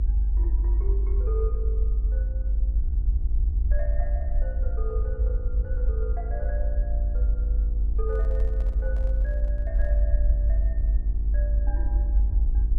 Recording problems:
hum; 60 Hz, harmonics up to 840 Hz, SNR 7 dB
rumble; below 52 Hz, strongest tone 50 Hz, SNR -14 dB
microphone handling noise; from 8 to 10 s; peak -5 dB vs average level

